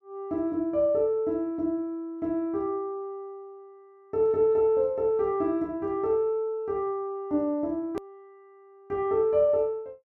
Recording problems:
edit click; at 8 s

